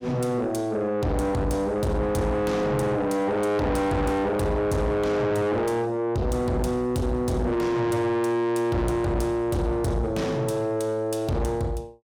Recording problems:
distorted audio; soft clipping, signal-to-distortion ratio 7 dB

